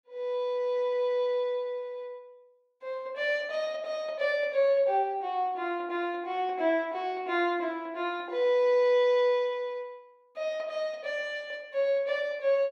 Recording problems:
none

